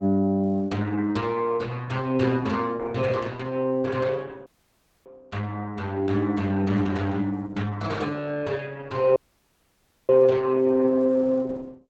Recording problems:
lossy codec; Opus, log-spectral distance 3 dB, nothing above 8 kHz
dropout; at 4.5 s for 0.5 s and at 9 s for 1 s

